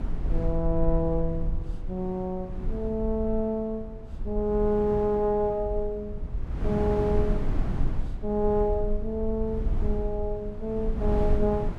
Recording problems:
low-frequency rumble; below 52 Hz, SNR 6 dB
wind noise; below 270 Hz, SNR 8 dB

